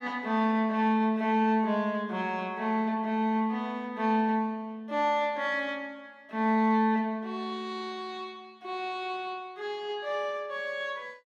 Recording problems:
none

